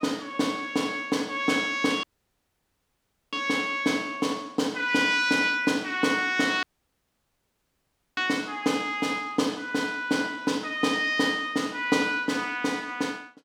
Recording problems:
audio cutting out; at 2 s for 1.5 s and at 6.5 s for 1.5 s

